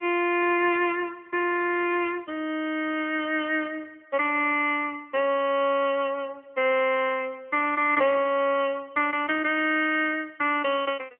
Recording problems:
phone line; 280 Hz to 3.1 kHz, AMR-NB

